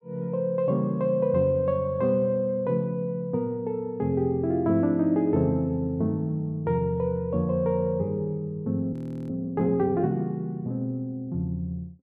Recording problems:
audio freezing; at 9 s

